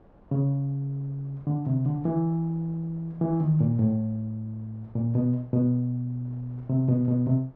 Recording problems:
wind on the microphone; below 570 Hz, SNR 27 dB

